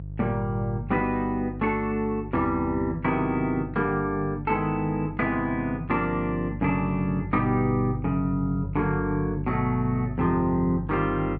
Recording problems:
electrical hum; 50 Hz, harmonics up to 350 Hz, SNR 10 dB

